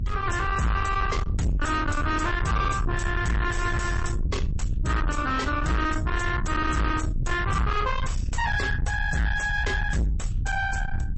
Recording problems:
lossy compression; MP3, log-spectral distance 2 dB, nothing above 8 kHz
distortion; soft clipping, signal-to-distortion ratio 6 dB
rumble; below 150 Hz, SNR 2 dB

